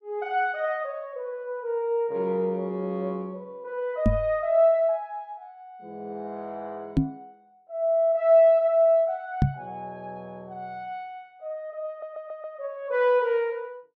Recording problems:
knock on the microphone; at 4 s, at 7 s and at 9.5 s; peak +7 dB vs average level
stutter; at 12 s

